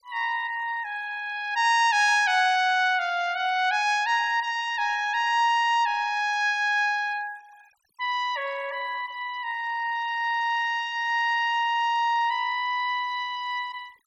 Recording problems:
denoising artefacts; signal-to-artefact ratio 24 dB

